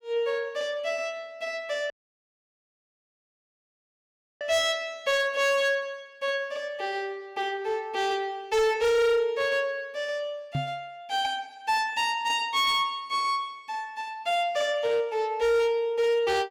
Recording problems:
distortion; hard clipping, signal-to-distortion ratio 11 dB
dropout; at 2 s for 2.5 s
microphone thump; at 11 s; peak +1 dB vs average level

